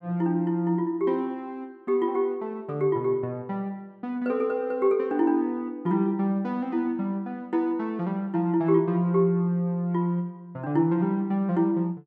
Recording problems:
none

